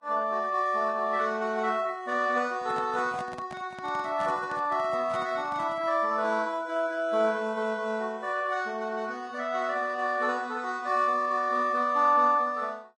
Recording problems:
lossy compression; Vorbis, log-spectral distance 2 dB
handling noise; from 2.5 to 6 s; peak -8 dB vs average level

